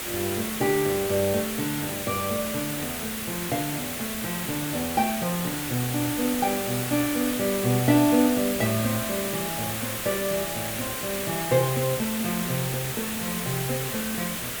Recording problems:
background hiss; slope -2 dB per octave, SNR 3 dB

